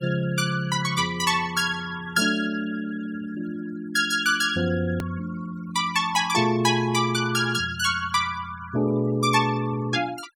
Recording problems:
noise reduction artefacts; signal-to-artefact ratio 23 dB
click at an edit; at 5 s

